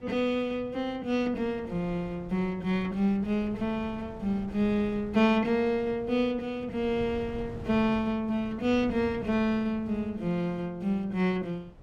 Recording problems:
wind noise; below 250 Hz, SNR 17 dB

